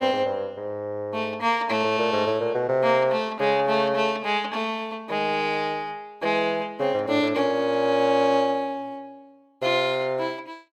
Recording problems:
none

